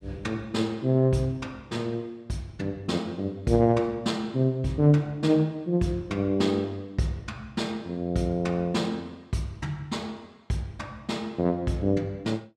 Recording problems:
none

